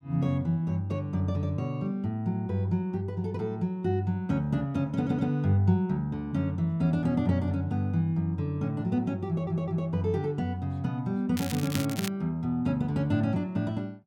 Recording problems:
audio stuttering; at 5 s and at 9.5 s
crackle; at 11 s; loose cable, SNR 10 dB

